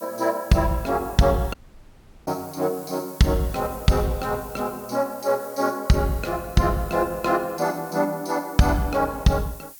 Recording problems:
hiss; SNR 18 dB
dropout; at 1.5 s for 0.5 s

